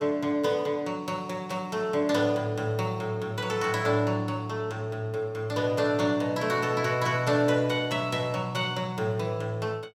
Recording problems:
static burst; at 1.5 s; peak -14 dB vs average level

